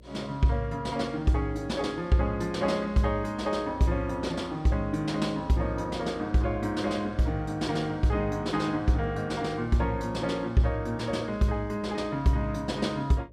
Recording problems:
hum; 60 Hz, harmonics up to 600 Hz, SNR 23 dB

